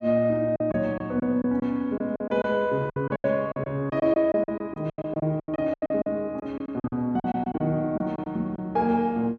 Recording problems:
packet loss; 15% of the sound replaced, filled with silence

